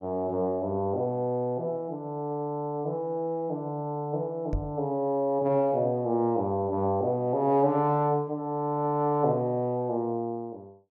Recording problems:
knock on the microphone; at 4.5 s; peak 0 dB vs average level

